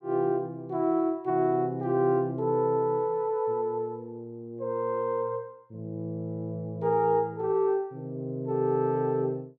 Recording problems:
none

